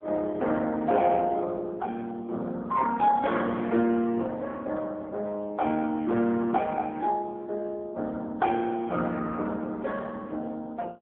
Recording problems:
telephone audio; 170 Hz to 2.3 kHz, AMR-NB

